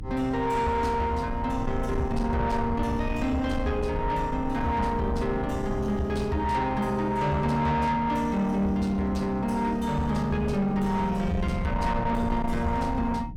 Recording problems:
distortion; soft clipping, signal-to-distortion ratio 11 dB
hum; 60 Hz, harmonics up to 300 Hz, SNR 16 dB
low-frequency rumble; below 150 Hz, SNR 9 dB

